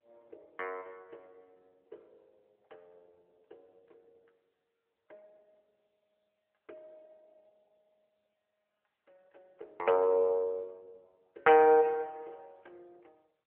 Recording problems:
phone line; 340 Hz to 2.7 kHz, AMR-NB

